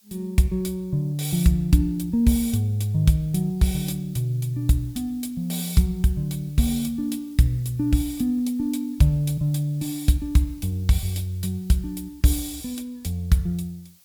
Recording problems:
hiss; SNR 29 dB

